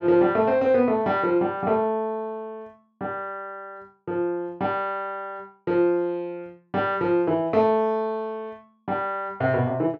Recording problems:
none

